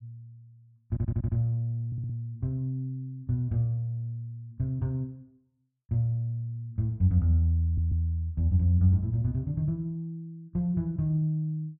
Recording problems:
stutter; at 1 s, at 2 s and at 7.5 s

